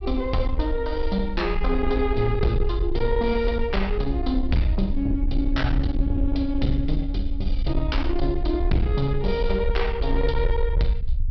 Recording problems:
low-pass filter; nothing above 5.5 kHz
distortion; soft clipping, signal-to-distortion ratio 11 dB
rumble; below 56 Hz, SNR 3 dB

